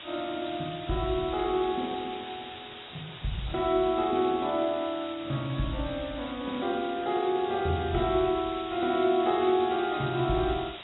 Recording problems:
lossy codec; AAC, log-spectral distance 19 dB, nothing above 3.7 kHz
hiss; SNR 14 dB
crackle; from 4.5 to 7 s; loose cable, SNR 27 dB

